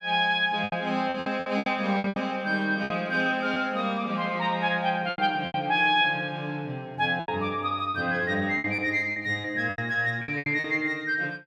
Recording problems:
lost packets; 11% of the sound replaced, filled with repeated pitch periods

